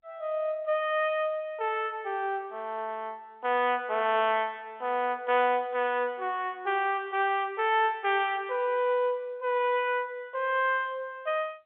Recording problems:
telephone audio; 280 Hz to 3.4 kHz, G.711

